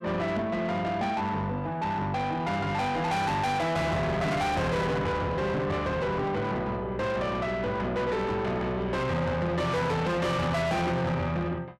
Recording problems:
distorted audio; soft clipping, signal-to-distortion ratio 7 dB

